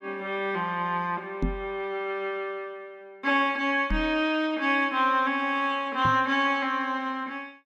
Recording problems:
microphone bump; at 1.5 s, at 4 s and at 6 s; peak +2 dB vs average level

